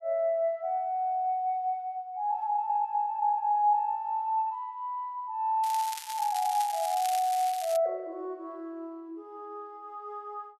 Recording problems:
crackle; from 5.5 to 8 s; loose cable, SNR 11 dB

